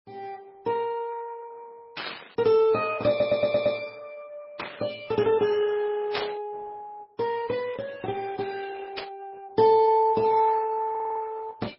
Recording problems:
codec artefacts; Opus, then MP3, log-spectral distance 4 dB, nothing above 5.3 kHz
burst of static; 4 times, first at 2 s; peak -3 dB vs average level
stutter; at 3 s and at 11 s

